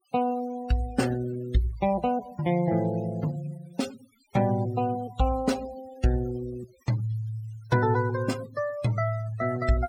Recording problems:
denoising artefacts; signal-to-artefact ratio 16 dB

